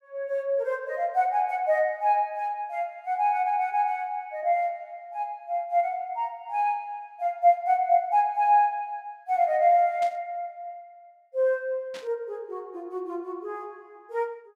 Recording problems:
static burst; at 10 s and at 12 s; peak -12 dB vs average level

